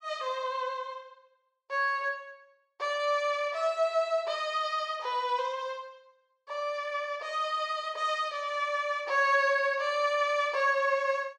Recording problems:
none

